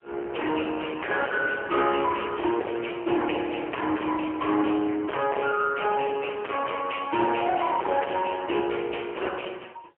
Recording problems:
phone line; 280 Hz to 2.9 kHz, AMR-NB, then MP3
distortion; hard clipping, signal-to-distortion ratio 6 dB

